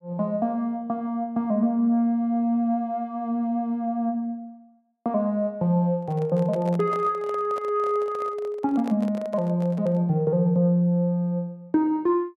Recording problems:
handling noise; from 6 to 10 s; peak -8 dB vs average level

